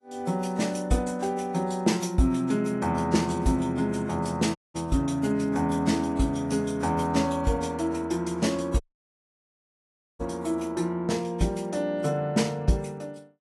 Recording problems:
codec artefacts; AAC, log-spectral distance 2 dB, nothing above 11.3 kHz
audio cutting out; at 4.5 s and at 9 s for 1.5 s

